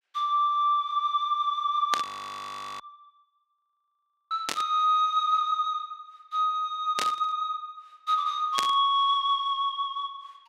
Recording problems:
static burst; 4 times, first at 2 s; peak +2 dB vs average level
audio freezing; at 2 s for 1 s and at 3.5 s for 1 s

